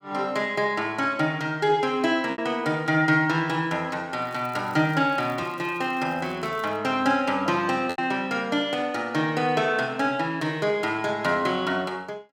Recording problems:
lost packets; 1.3% of the sound replaced, filled with repeated pitch periods
crackling; from 4 to 7 s; loose cable, SNR 30 dB

